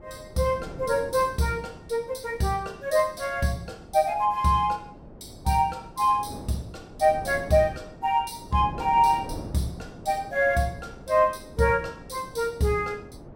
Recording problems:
wind on the microphone; below 450 Hz, SNR 17 dB

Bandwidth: 16.5 kHz